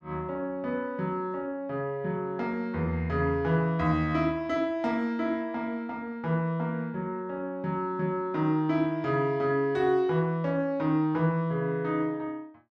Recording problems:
none

